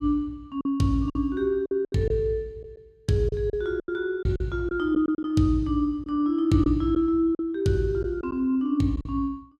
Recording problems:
lost packets; 8% of the sound replaced, filled with silence

